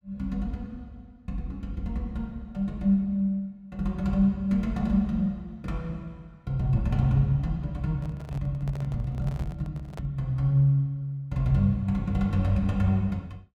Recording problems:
handling noise; from 8 to 10 s; peak -11 dB vs average level

